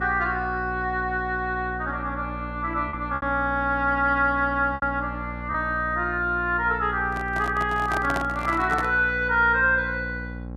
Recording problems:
hum; 60 Hz, harmonics up to 840 Hz, SNR 11 dB
packet loss; 2% of the sound replaced, filled with repeated pitch periods
microphone handling noise; from 7 to 9 s; peak -2 dB vs average level

